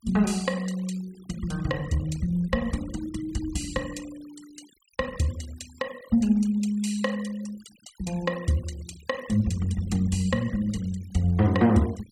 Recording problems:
noise reduction artefacts; signal-to-artefact ratio 20 dB

